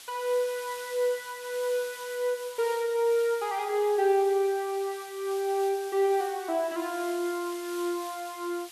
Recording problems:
background hiss; slope +3 dB per octave, SNR 15 dB

